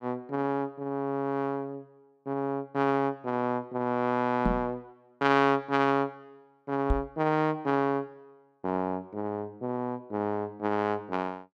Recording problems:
knock on the microphone; at 4.5 s and at 7 s; peak +5 dB vs average level

